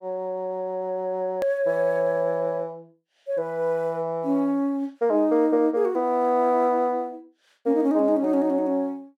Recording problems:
edit click; at 1.5 s

